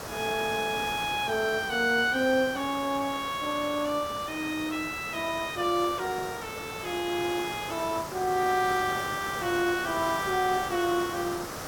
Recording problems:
hiss; SNR 9 dB

